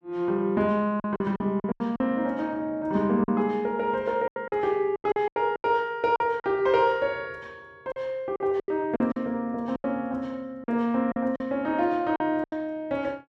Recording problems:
lost packets; 10% of the sound replaced, filled with silence

